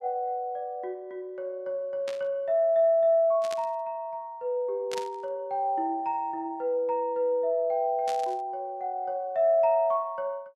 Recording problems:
static burst; 4 times, first at 2 s; peak -6 dB vs average level

